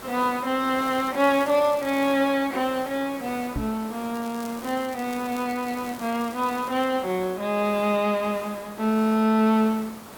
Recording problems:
hiss; slope -5 dB per octave, SNR 16 dB
crackle; from 1 to 2 s and from 4 to 7 s; loose cable, SNR 22 dB
knock on the microphone; at 3.5 s; peak -1 dB vs average level

